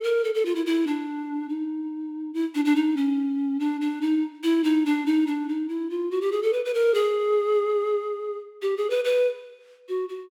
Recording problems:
none

